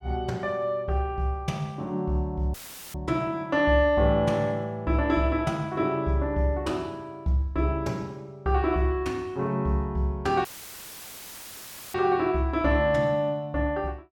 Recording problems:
audio cutting out; at 2.5 s and at 10 s for 1.5 s; filled with static

